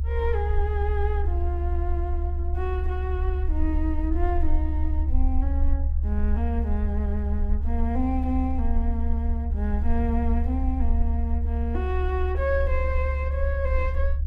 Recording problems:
rumble; below 72 Hz, SNR -4 dB

